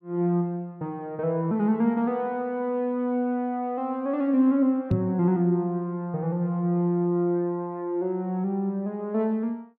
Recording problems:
microphone bump; at 5 s; peak +5 dB vs average level

